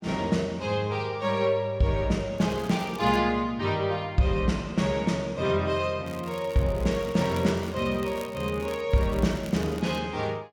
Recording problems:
crackle; at 2.5 s, from 6 to 9 s and from 9 to 10 s; loose cable, SNR 21 dB

